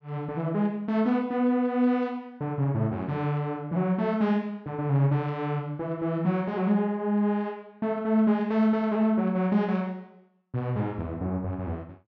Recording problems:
none

